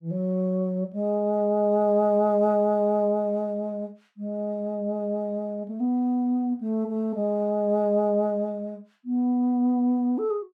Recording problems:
none

